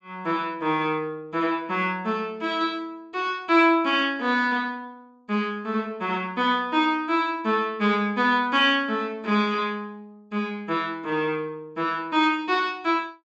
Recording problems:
treble missing; nothing above 8 kHz

